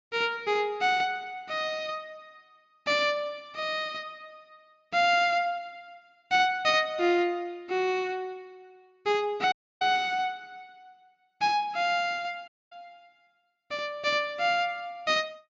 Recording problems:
treble cut off; nothing above 7.4 kHz
audio cutting out; at 9.5 s and at 12 s

